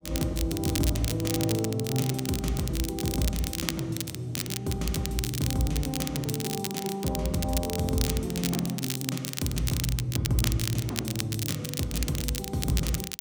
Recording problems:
crackling; vinyl, SNR 4 dB

